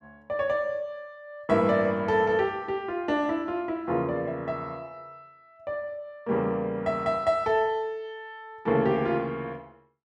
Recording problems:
none

